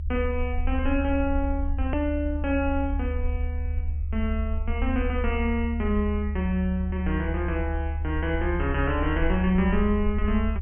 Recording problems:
low-pass filter; nothing above 3.2 kHz
rumble; below 76 Hz, SNR 2 dB
hard cut with a click; at 2 s

